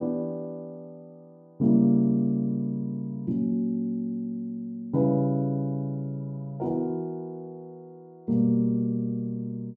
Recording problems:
none

